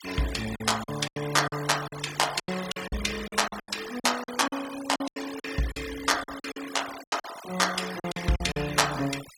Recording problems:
noise reduction artefacts; signal-to-artefact ratio 11 dB
packet loss; 14% of the sound replaced, filled with silence

